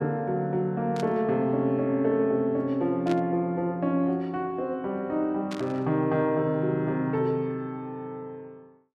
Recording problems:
burst of static; at 1 s, at 3 s and at 5.5 s; peak -8 dB vs average level

